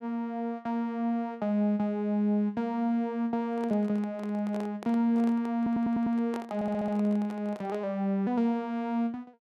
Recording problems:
handling noise; from 3.5 to 8 s; peak -7 dB vs average level
audio stuttering; at 5.5 s and at 6.5 s

